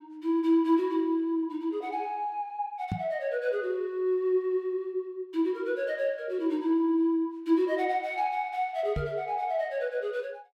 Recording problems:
microphone thump; at 3 s and at 9 s; peak +1 dB vs average level

